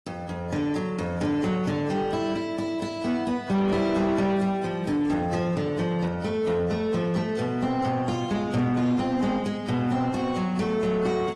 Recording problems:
lossy codec; AAC, then AAC, log-spectral distance 2 dB
distorted audio; soft clipping, signal-to-distortion ratio 11 dB

